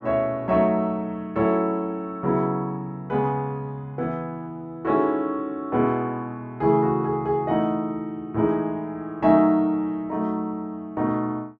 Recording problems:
none

